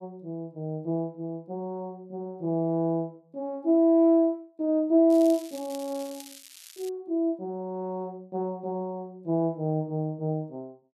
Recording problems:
crackling; from 5 to 7 s; loose cable, SNR 18 dB

